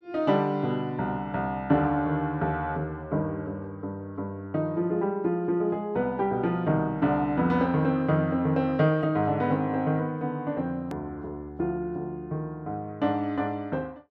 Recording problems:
click at an edit; at 11 s

